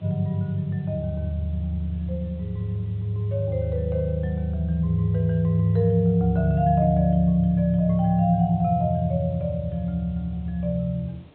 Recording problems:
low-pass filter; nothing above 4 kHz
background hiss; SNR 28 dB

